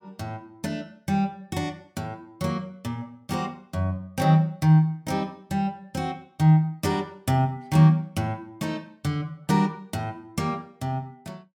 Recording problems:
none

